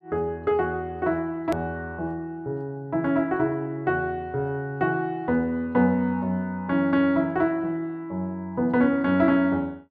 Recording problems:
hard cut with a click; at 1.5 s

